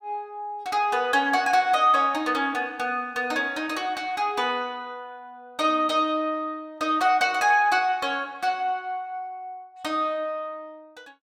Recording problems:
none

